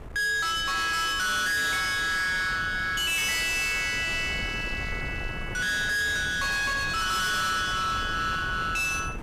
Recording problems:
distortion; hard clipping, signal-to-distortion ratio 7 dB
wind noise; below 610 Hz, SNR 13 dB

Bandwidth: 15 kHz